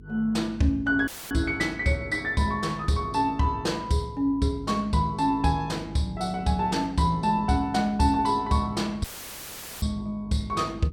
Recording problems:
hum; 50 Hz, harmonics up to 450 Hz, SNR 19 dB
audio cutting out; at 1 s and at 9 s for 1 s; filled with static

